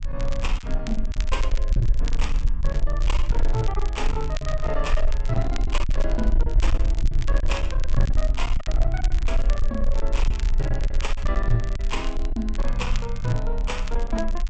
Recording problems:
treble cut off; nothing above 8 kHz
distortion; hard clipping, uneven, signal-to-distortion ratio 9 dB
rumble; below 42 Hz, strongest tone 20 Hz, SNR -4 dB
crackle; vinyl, SNR 13 dB
packet loss; 4% of the sound replaced, filled with silence

